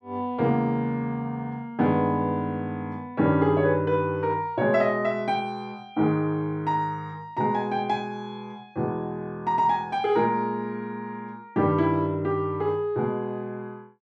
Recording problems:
none

